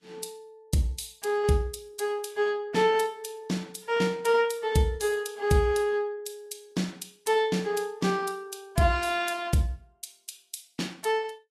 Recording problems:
lossy compression; Vorbis, log-spectral distance 3 dB, nothing above 12.7 kHz

